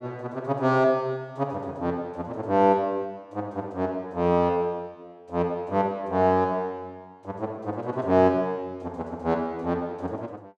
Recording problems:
none

